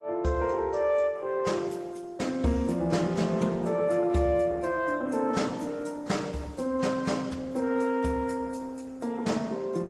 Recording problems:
lossy codec; AAC, then Opus, log-spectral distance 3 dB

